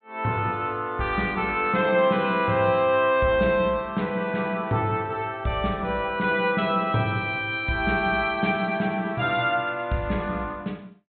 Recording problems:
treble missing; nothing above 4 kHz

